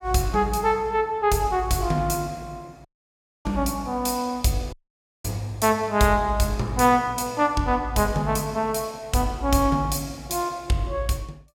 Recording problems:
dropout; at 3 s for 0.5 s and at 4.5 s for 0.5 s

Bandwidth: 16.5 kHz